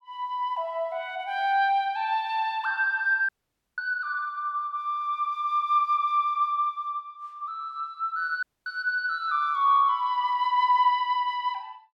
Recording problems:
audio cutting out; at 3.5 s and at 8.5 s

